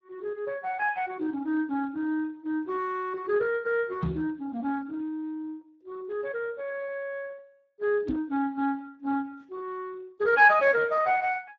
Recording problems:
lossy codec; Speex, log-spectral distance 2 dB
knock on the microphone; at 4 s and at 8 s; peak +4 dB vs average level

